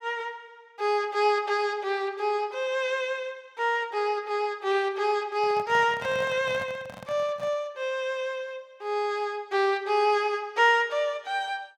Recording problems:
microphone handling noise; from 5.5 to 7.5 s; peak -9 dB vs average level

